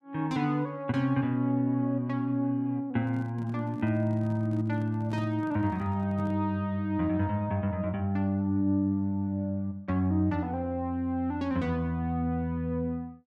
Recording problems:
microphone handling noise; from 3 to 6.5 s; peak -8 dB vs average level

